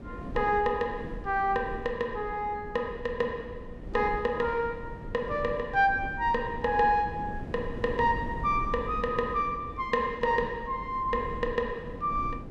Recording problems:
wind on the microphone; below 270 Hz, SNR 12 dB

